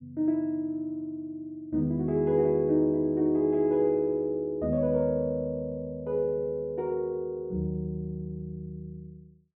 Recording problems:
none

